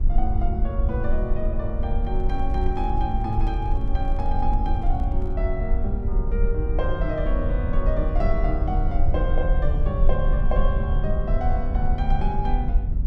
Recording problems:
low-frequency rumble; below 54 Hz, SNR -4 dB
microphone handling noise; from 2 to 5.5 s; peak -10 dB vs average level

